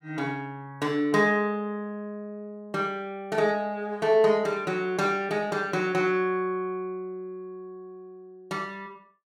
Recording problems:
none

